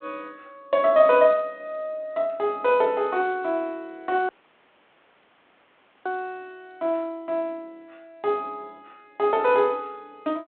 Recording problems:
telephone audio; 260 Hz to 3.5 kHz, G.726
dropout; at 4.5 s for 2 s

